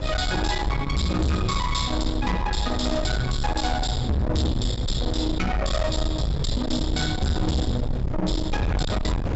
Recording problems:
low-pass filter; nothing above 7.6 kHz
distortion; soft clipping, signal-to-distortion ratio 7 dB
low-frequency rumble; below 110 Hz, SNR 4 dB
wind on the microphone; below 250 Hz, SNR 5 dB

